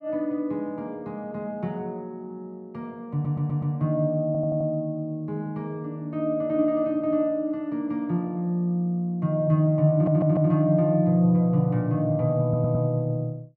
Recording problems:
audio stuttering; 4 times, first at 3 s

